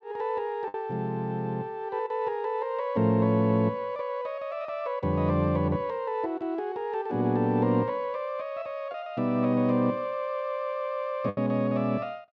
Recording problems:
lost packets; 1.3% of the sound replaced, filled with the last packet

